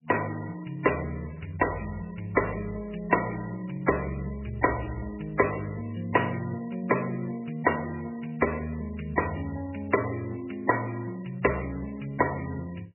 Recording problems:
lossy compression; MP3, log-spectral distance 9 dB, nothing above 2.7 kHz

